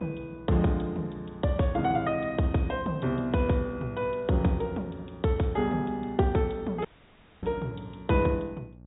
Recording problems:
treble missing; nothing above 4 kHz
hum; 60 Hz, harmonics up to 840 Hz, SNR 22 dB
dropout; at 7 s for 0.5 s

